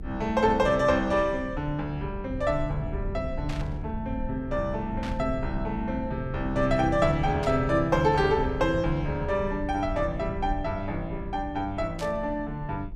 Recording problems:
hum; 60 Hz, harmonics up to 360 Hz, SNR 19 dB
low-frequency rumble; below 110 Hz, SNR 10 dB
burst of static; 4 times, first at 3.5 s; peak -7 dB vs average level

